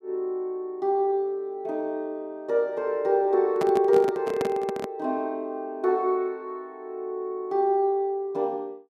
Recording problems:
microphone handling noise; from 3.5 to 5 s; peak -1 dB vs average level

